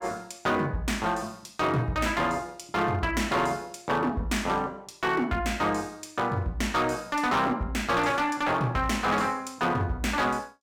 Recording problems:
distortion; hard clipping, signal-to-distortion ratio 11 dB

